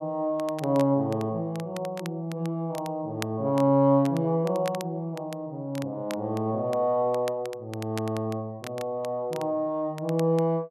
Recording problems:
crackling; vinyl, SNR 19 dB

